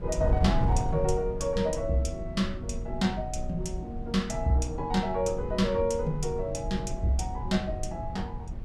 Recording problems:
wind on the microphone; below 100 Hz, SNR 5 dB

